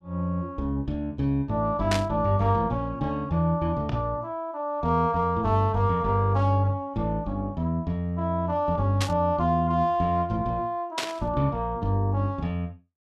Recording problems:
burst of static; at 2 s, at 9 s and at 11 s; peak +2 dB vs average level

